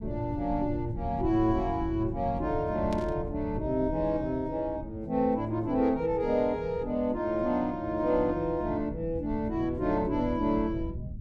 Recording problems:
rumble; below 140 Hz, SNR 11 dB
static burst; at 3 s; peak -11 dB vs average level

